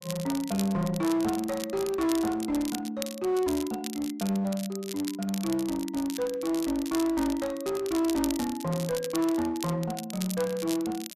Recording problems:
distortion; hard clipping, uneven, signal-to-distortion ratio 9 dB
crackling; vinyl, SNR 11 dB

